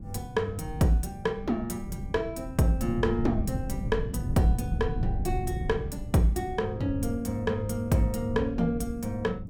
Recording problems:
wind on the microphone; below 150 Hz, SNR 6 dB

